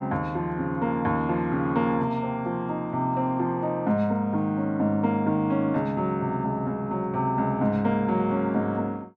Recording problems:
none

